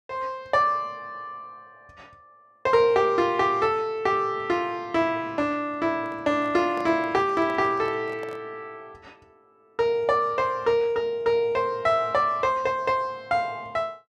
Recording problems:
microphone handling noise; from 6 to 8.5 s; peak -12 dB vs average level

